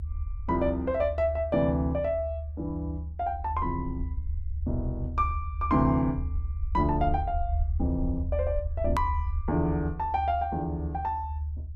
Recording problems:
low-frequency rumble; below 76 Hz, strongest tone 76 Hz, SNR 4 dB
click at an edit; at 9 s

